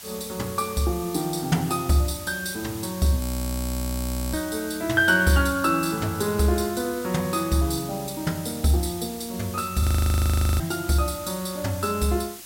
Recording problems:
background hiss; slope +1 dB per octave, SNR 13 dB
frozen audio; at 3 s for 1 s and at 10 s for 1 s

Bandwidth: 16 kHz